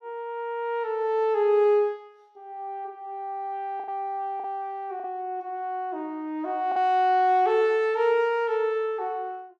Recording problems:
packet loss; 2% of the sound replaced, filled with the last packet

